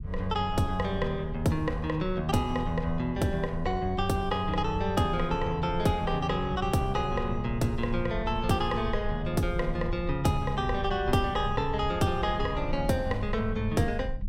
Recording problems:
rumble; below 82 Hz, SNR 9 dB

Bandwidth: 16.5 kHz